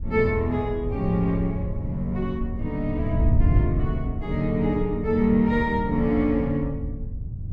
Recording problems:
wind noise; below 100 Hz, SNR 5 dB

